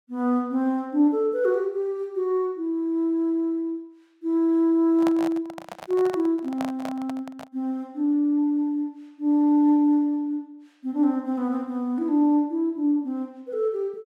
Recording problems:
handling noise; from 5 to 7.5 s; peak -3 dB vs average level

